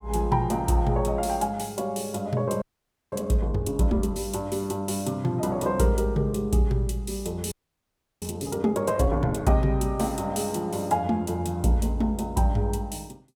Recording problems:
frozen audio; at 2.5 s for 0.5 s and at 7.5 s for 0.5 s

